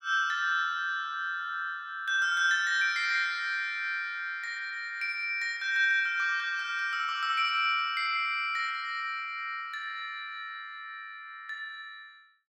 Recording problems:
none

